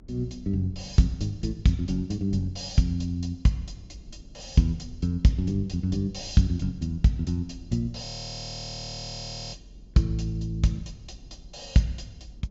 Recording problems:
treble cut off; nothing above 7.5 kHz
low-frequency rumble; below 150 Hz, SNR 21 dB
frozen audio; at 8 s for 1.5 s

